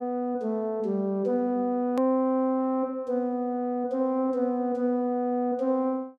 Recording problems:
click at an edit; at 2 s

